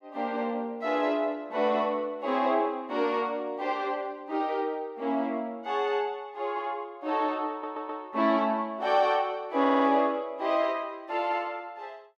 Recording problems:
audio stuttering; at 7.5 s and at 9.5 s

